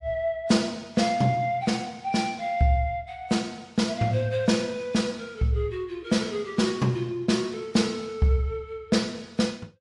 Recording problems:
codec artefacts; MP3, log-spectral distance 2 dB

